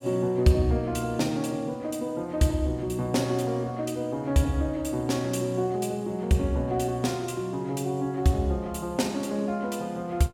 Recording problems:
none

